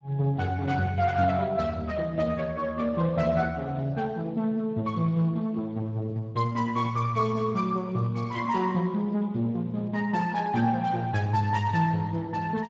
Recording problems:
codec artefacts; Speex, log-spectral distance 3 dB, nothing above 7.3 kHz

